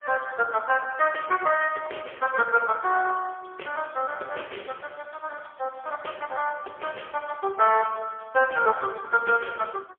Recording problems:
telephone audio; 340 Hz to 3.2 kHz, AMR-NB, then MP3

